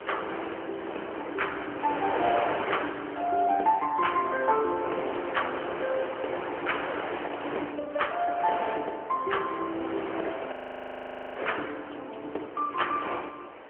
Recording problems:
phone line; 280 Hz to 3.2 kHz, AMR-NB
wind on the microphone; below 1.6 kHz, SNR 6 dB
frozen audio; at 11 s for 1 s

